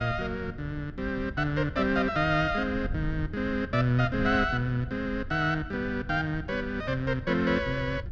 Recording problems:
wind on the microphone; below 120 Hz, SNR 12 dB

